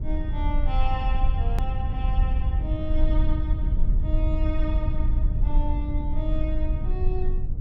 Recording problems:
low-frequency rumble; below 62 Hz, SNR -8 dB
hard cut with a click; at 1.5 s

